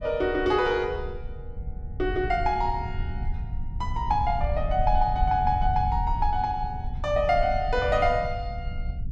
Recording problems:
rumble; below 78 Hz, SNR 7 dB

